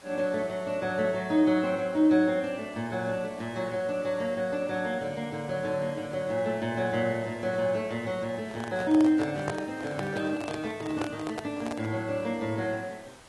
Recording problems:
lossy compression; AAC, log-spectral distance 3 dB
background hiss; slope -3 dB per octave, SNR 22 dB
microphone handling noise; from 8.5 to 12 s; peak +1 dB vs average level

